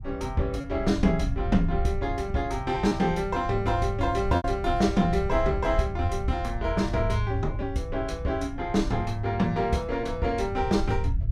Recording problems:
low-frequency rumble; below 86 Hz, SNR 7 dB
lost packets; 2% of the sound replaced, filled with repeated pitch periods

